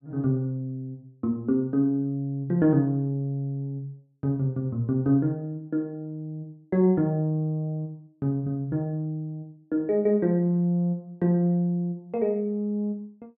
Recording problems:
none

